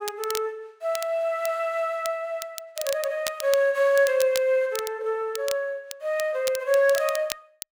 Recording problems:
crackling; vinyl, SNR 12 dB

